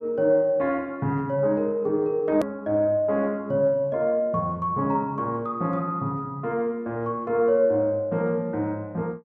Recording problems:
click at an edit; at 2.5 s

